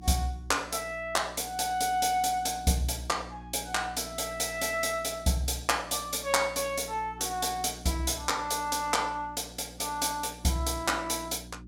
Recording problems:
hum; 60 Hz, harmonics up to 360 Hz, SNR 19 dB

